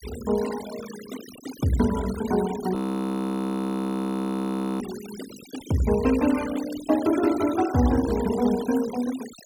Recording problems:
noise reduction artefacts; signal-to-artefact ratio 14 dB
frozen audio; at 3 s for 2 s

